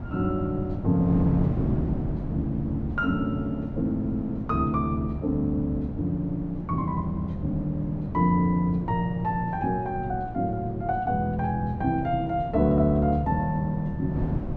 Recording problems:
wind noise; below 240 Hz, SNR 8 dB

